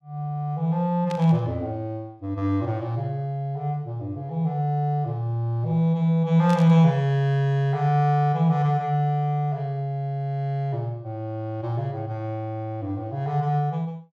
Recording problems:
burst of static; at 1 s and at 6.5 s; peak -10 dB vs average level

